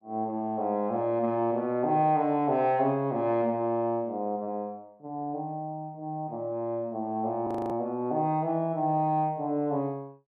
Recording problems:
frozen audio; at 7.5 s

